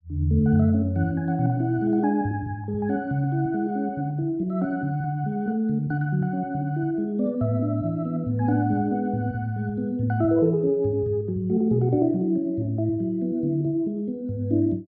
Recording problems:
none

